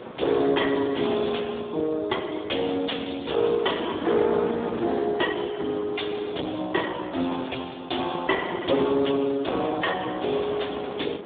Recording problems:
phone line; 190 Hz to 3.6 kHz, Speex
distortion; soft clipping, signal-to-distortion ratio 11 dB
wind noise; below 820 Hz, SNR 12 dB

